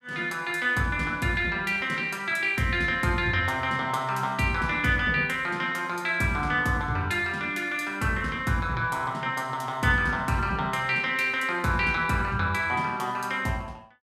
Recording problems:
none

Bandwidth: 15 kHz